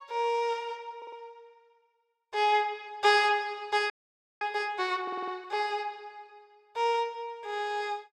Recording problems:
audio stuttering; at 1 s and at 5 s
frozen audio; at 4 s for 0.5 s

